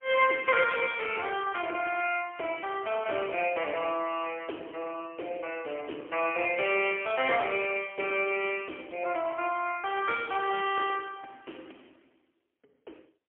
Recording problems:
phone line; 260 Hz to 3.2 kHz, AMR-NB, then MP3

